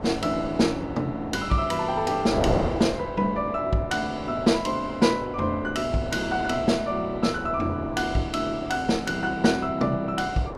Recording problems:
wind noise; below 700 Hz, SNR 9 dB

